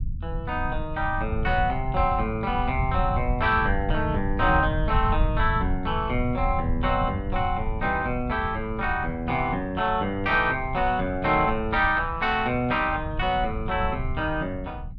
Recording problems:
low-frequency rumble; below 98 Hz, SNR 7 dB

